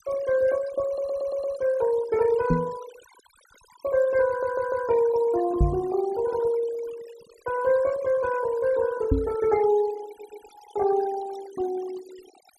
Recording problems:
denoising artefacts; signal-to-artefact ratio 18 dB
audio stuttering; at 1 s, at 4.5 s and at 10 s
knock on the microphone; at 2.5 s, at 5.5 s and at 9 s; peak +6 dB vs average level

